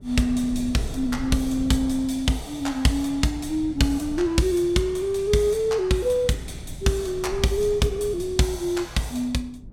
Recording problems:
rumble; below 140 Hz, SNR 16 dB

